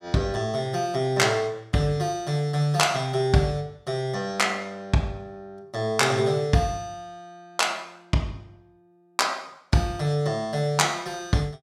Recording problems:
none

